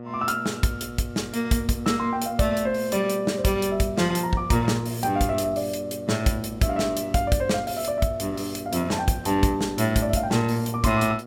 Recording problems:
electrical hum; 60 Hz, harmonics up to 1.3 kHz, SNR 16 dB

